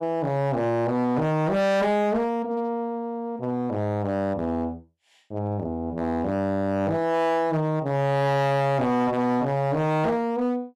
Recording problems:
distorted audio; hard clipping, signal-to-distortion ratio 7 dB

